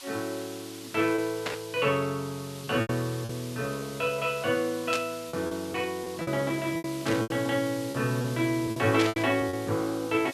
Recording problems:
background hiss; slope +3 dB per octave, SNR 14 dB
lost packets; 7% of the sound replaced, filled with repeated pitch periods
burst of static; 4 times, first at 1.5 s; peak +2 dB vs average level

